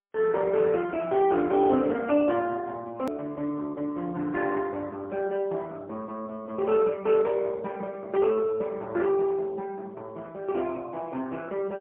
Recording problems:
phone line; 240 Hz to 3.5 kHz, AMR-NB, then MP3
hard cut with a click; at 3 s

